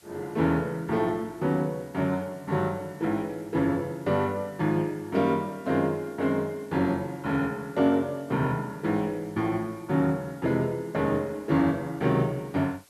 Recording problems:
hiss; slope -1 dB per octave, SNR 28 dB

